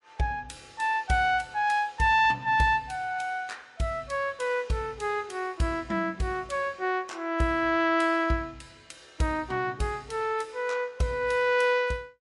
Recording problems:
lossy compression; MP3, log-spectral distance 2 dB, nothing above 11 kHz

